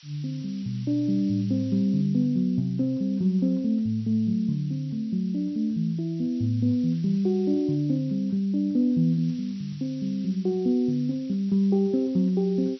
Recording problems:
codec artefacts; MP2, log-spectral distance 4 dB
hiss; slope +7 dB per octave, SNR 27 dB

